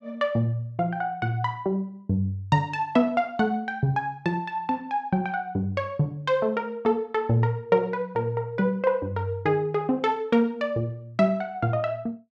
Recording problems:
none

